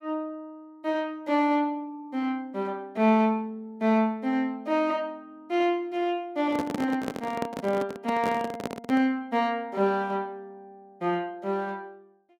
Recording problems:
handling noise; from 6.5 to 9 s; peak -1 dB vs average level

